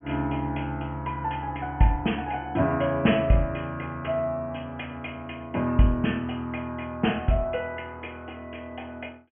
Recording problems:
treble cut off; nothing above 3.2 kHz

